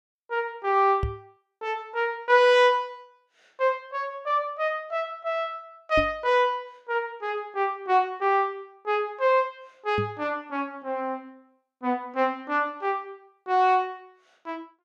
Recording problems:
knock on the microphone; at 1 s, at 6 s and at 10 s; peak 0 dB vs average level

